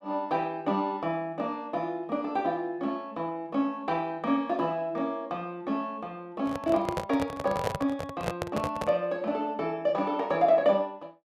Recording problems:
microphone handling noise; from 6.5 to 9 s; peak +4 dB vs average level

